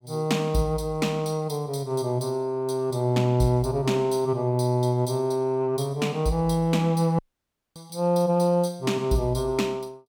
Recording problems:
dropout; at 7 s for 0.5 s

